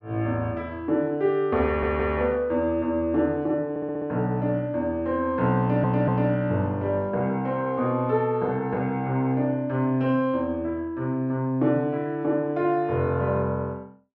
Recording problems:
stutter; at 1.5 s, at 3.5 s and at 5.5 s

